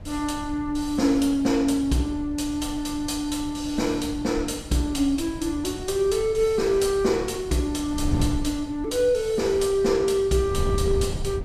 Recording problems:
wind on the microphone; below 140 Hz, SNR 11 dB

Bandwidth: 14 kHz